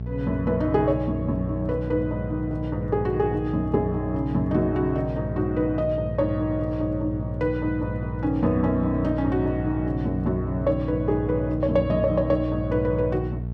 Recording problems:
electrical hum; 60 Hz, harmonics up to 660 Hz, SNR 6 dB

